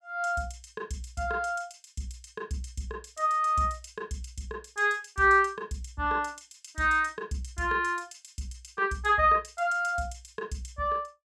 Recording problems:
none

